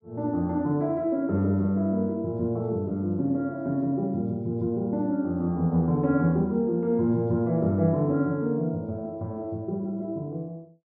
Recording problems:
none

